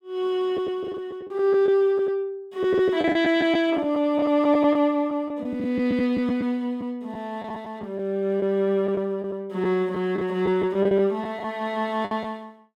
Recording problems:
packet loss; 8% of the sound replaced, filled with the last packet

